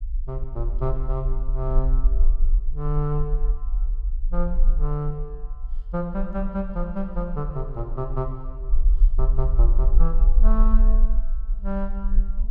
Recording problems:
rumble; below 40 Hz, strongest tone 20 Hz, SNR -5 dB

